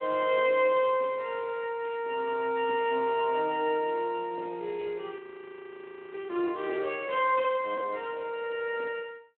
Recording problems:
telephone audio; 280 Hz to 3.2 kHz, Speex
audio freezing; at 5 s for 1 s

